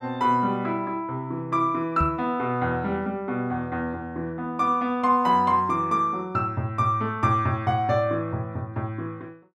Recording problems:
knock on the microphone; at 2 s; peak +1 dB vs average level

